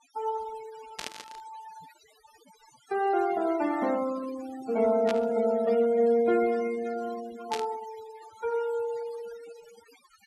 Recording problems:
noise reduction artefacts; signal-to-artefact ratio 17 dB
static burst; at 1 s, at 5 s and at 7.5 s; peak -3 dB vs average level

